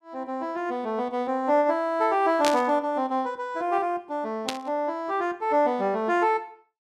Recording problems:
burst of static; at 2.5 s and at 4.5 s; peak +2 dB vs average level

